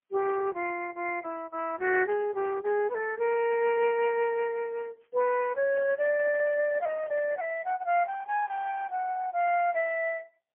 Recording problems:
telephone audio; 340 Hz to 3.3 kHz, AMR-NB, then MP3
handling noise; from 5.5 to 7.5 s; peak -15 dB vs average level

